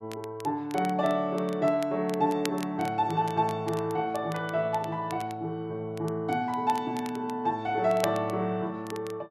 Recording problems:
crackle; vinyl, SNR 18 dB

